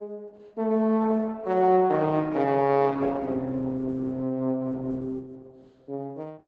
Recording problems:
lossy codec; Opus, log-spectral distance 2 dB

